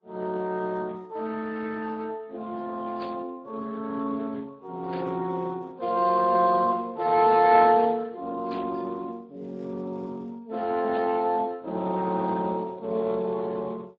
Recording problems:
lossy compression; MP3, then Speex, log-spectral distance 3 dB
burst of static; 4 times, first at 3 s; peak -11 dB vs average level

